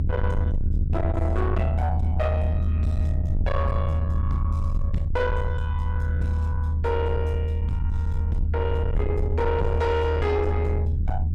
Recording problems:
distortion; soft clipping, signal-to-distortion ratio 8 dB
rumble; below 82 Hz, strongest tone 78 Hz, SNR -3 dB

